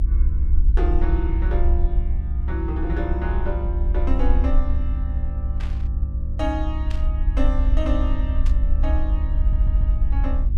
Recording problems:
electrical hum; 50 Hz, harmonics up to 350 Hz, SNR 2 dB
low-frequency rumble; below 64 Hz, SNR -7 dB
burst of static; at 5.5 s, at 7 s and at 8.5 s; peak -6 dB vs average level
stutter; at 9.5 s

